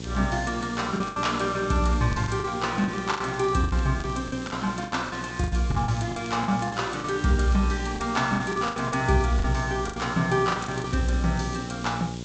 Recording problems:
treble missing; nothing above 8 kHz
hum; 60 Hz, harmonics up to 1 kHz, SNR 12 dB
background hiss; SNR 17 dB
crackle; vinyl, SNR 26 dB
packet loss; 12% of the sound replaced, filled with the last packet

